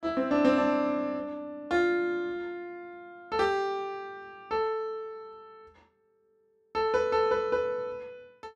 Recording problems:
none

